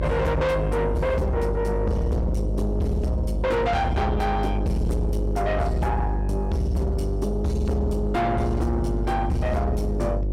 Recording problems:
distortion; soft clipping, signal-to-distortion ratio 7 dB
electrical hum; 50 Hz, harmonics up to 700 Hz, SNR 2 dB

